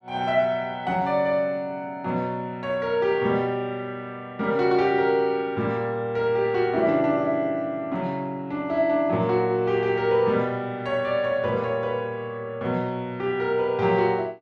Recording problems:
none

